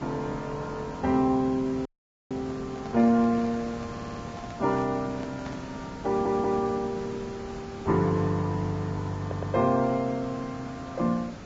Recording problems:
lossy compression; Vorbis, log-spectral distance 4 dB
background hiss; slope -5 dB per octave, SNR 13 dB
audio cutting out; at 2 s
handling noise; from 2.5 to 5.5 s; peak -10 dB vs average level
audio stuttering; at 4 s, at 6 s and at 9 s

